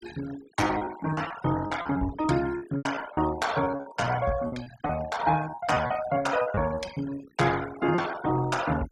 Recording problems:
denoising artefacts; signal-to-artefact ratio 14 dB
lost packets; 14% of the sound replaced, filled with repeated pitch periods

